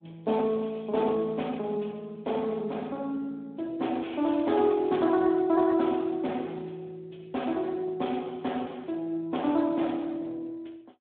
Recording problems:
telephone audio; 190 Hz to 3.7 kHz, Speex

